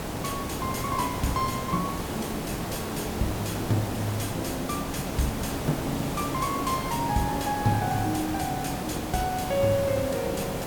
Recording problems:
background hiss; slope -6 dB per octave, SNR 2 dB

